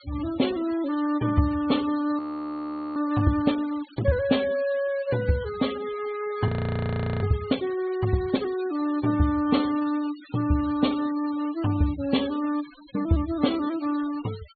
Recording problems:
low-pass filter; nothing above 4.5 kHz
denoising artefacts; signal-to-artefact ratio 17 dB
audio freezing; at 2 s for 1 s and at 6.5 s for 1 s

